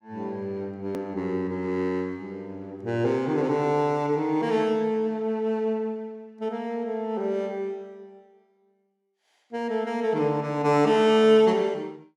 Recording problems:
edit click; at 1 s

